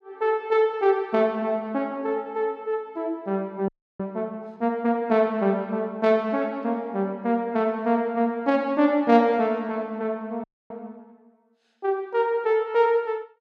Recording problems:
audio freezing; at 3.5 s and at 10 s

